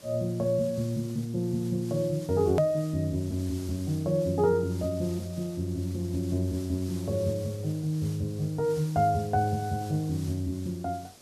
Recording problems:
background hiss; SNR 19 dB
edit click; at 2.5 s

